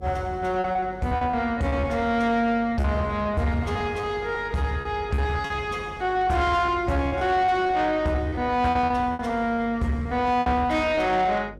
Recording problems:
distortion; soft clipping, signal-to-distortion ratio 12 dB
electrical hum; 50 Hz, harmonics up to 550 Hz, SNR 20 dB
lost packets; 9% of the sound replaced, filled with repeated pitch periods

